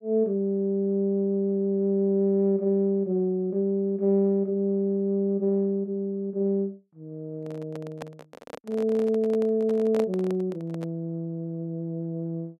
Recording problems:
handling noise; from 7.5 to 11 s; peak -3 dB vs average level

